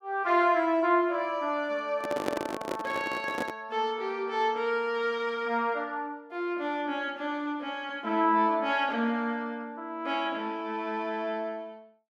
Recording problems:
handling noise; from 2 to 3.5 s; peak +3 dB vs average level

